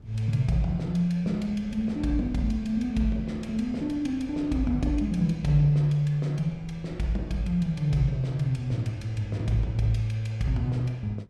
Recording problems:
wind on the microphone; below 140 Hz, SNR 20 dB

